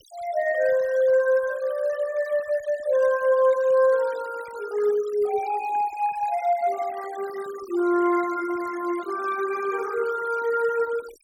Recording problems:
noise reduction artefacts; signal-to-artefact ratio 20 dB

